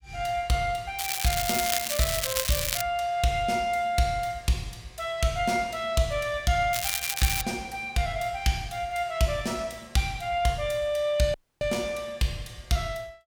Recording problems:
crackle; from 1 to 3 s and at 6.5 s; loose cable, SNR 0 dB
dropout; at 11 s

